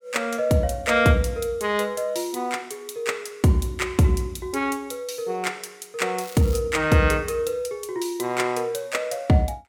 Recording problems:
crackling; at 6 s; loose cable, SNR 18 dB

